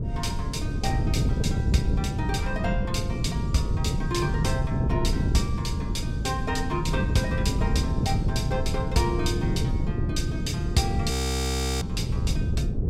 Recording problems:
wind on the microphone; below 170 Hz, SNR -2 dB
frozen audio; at 11 s for 0.5 s

